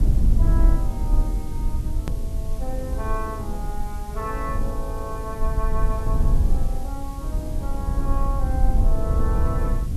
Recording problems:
hiss; slope +2 dB per octave, SNR 14 dB
rumble; below 62 Hz, SNR -8 dB
edit click; at 2 s

